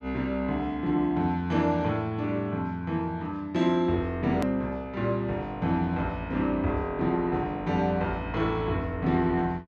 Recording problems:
click at an edit; at 4.5 s

